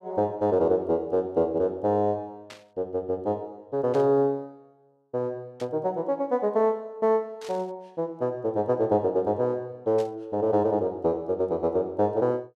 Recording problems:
burst of static; 5 times, first at 2.5 s; peak -13 dB vs average level

